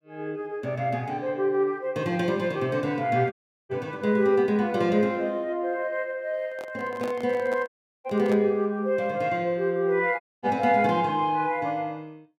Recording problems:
audio cutting out; at 3.5 s, at 7.5 s and at 10 s
handling noise; from 6.5 to 8.5 s; peak -6 dB vs average level

